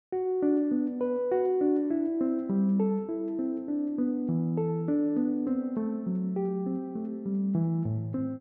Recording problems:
none

